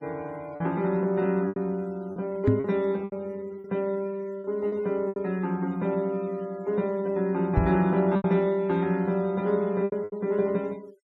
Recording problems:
noise reduction artefacts; signal-to-artefact ratio 26 dB
lost packets; 7% of the sound replaced, filled with repeated pitch periods
microphone bump; at 2.5 s and at 7.5 s; peak +8 dB vs average level

